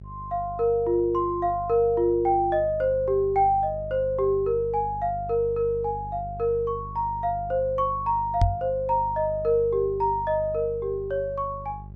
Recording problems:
electrical hum; 50 Hz, harmonics up to 400 Hz, SNR 15 dB
microphone thump; at 8.5 s; peak +6 dB vs average level

